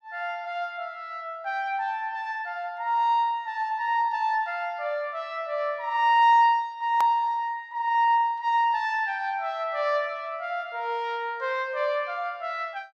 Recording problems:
hard cut with a click; at 7 s

